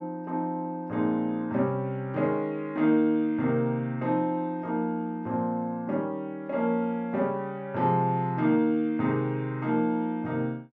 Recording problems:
none

